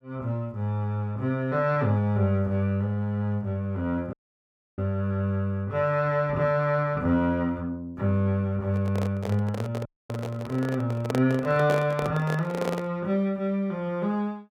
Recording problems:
dropout; at 4 s for 0.5 s and at 10 s
microphone handling noise; from 8.5 to 13 s; peak +1 dB vs average level

